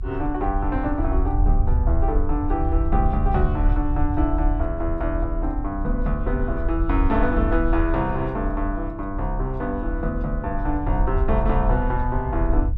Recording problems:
low-frequency rumble; below 64 Hz, strongest tone 36 Hz, SNR 0 dB

